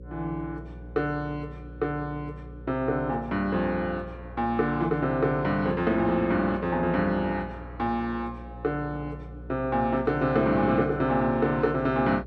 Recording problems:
mains hum; 60 Hz, harmonics up to 540 Hz, SNR 16 dB

